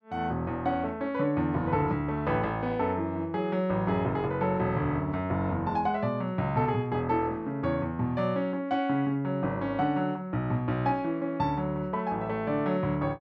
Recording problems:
none

